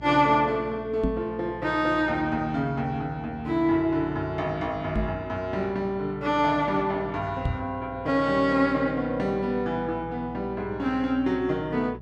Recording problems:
hum; 60 Hz, harmonics up to 660 Hz, SNR 18 dB
knock on the microphone; at 1 s, at 5 s and at 7.5 s; peak +3 dB vs average level

